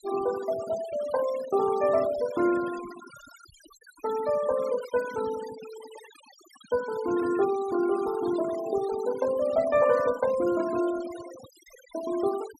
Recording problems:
denoising artefacts; signal-to-artefact ratio 16 dB

